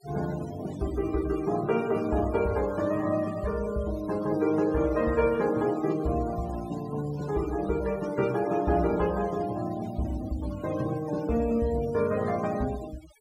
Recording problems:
denoising artefacts; signal-to-artefact ratio 18 dB

